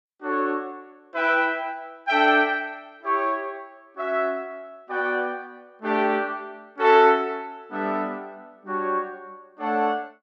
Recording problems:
none

